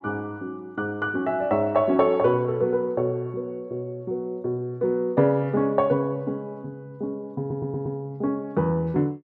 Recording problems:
stutter; at 7.5 s

